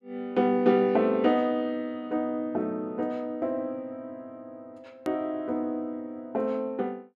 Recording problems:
hard cut with a click; at 5 s

